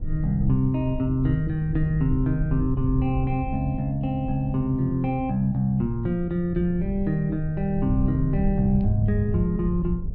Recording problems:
rumble; below 100 Hz, SNR 7 dB

